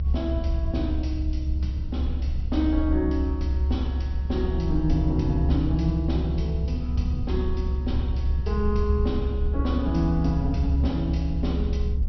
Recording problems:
treble missing; nothing above 5.8 kHz
rumble; below 70 Hz, strongest tone 68 Hz, SNR -1 dB

